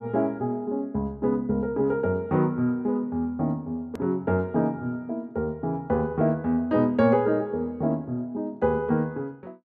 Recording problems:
edit click; at 4 s

